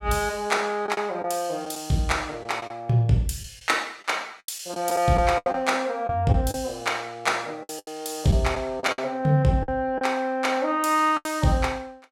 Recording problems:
lost packets; 7% of the sound replaced, filled with the last packet

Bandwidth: 16.5 kHz